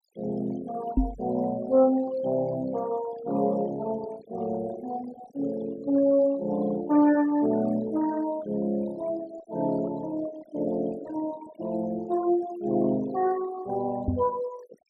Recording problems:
noise reduction artefacts; signal-to-artefact ratio 19 dB
microphone bump; at 1 s and at 14 s; peak +7 dB vs average level

